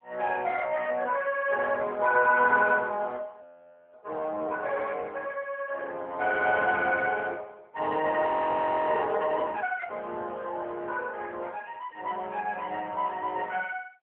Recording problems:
phone line; 260 Hz to 2.2 kHz, AMR-NB
frozen audio; at 3.5 s for 0.5 s and at 8.5 s for 0.5 s

